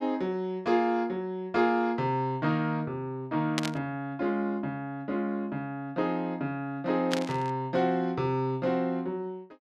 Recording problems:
burst of static; at 3.5 s and at 7 s; peak +4 dB vs average level

